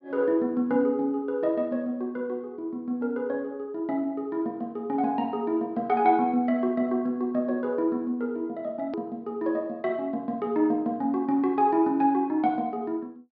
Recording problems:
treble missing; nothing above 5.5 kHz
edit click; at 9 s

